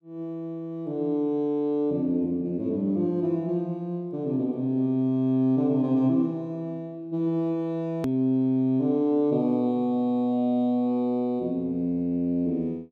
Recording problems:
click at an edit; at 8 s

